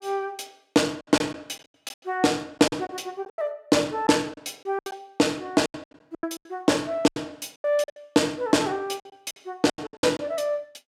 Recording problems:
packet loss; 14% of the sound replaced, filled with silence

